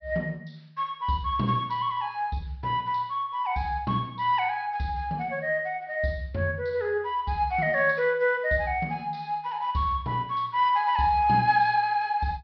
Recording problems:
low-pass filter; nothing above 5.5 kHz

